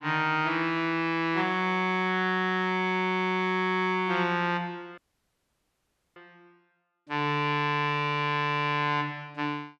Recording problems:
dropout; at 5 s for 1 s

